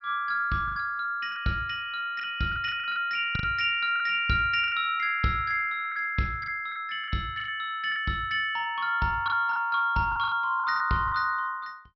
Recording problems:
low-pass filter; nothing above 5.6 kHz
lost packets; 9% of the sound replaced, filled with the last packet

